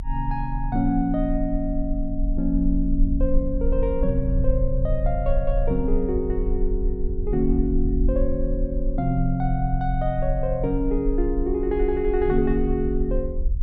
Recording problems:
rumble; below 46 Hz, strongest tone 24 Hz, SNR 3 dB

